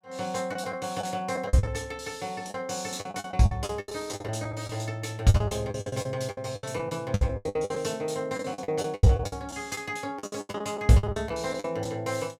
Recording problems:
lost packets; 17% of the sound replaced, filled with the last packet

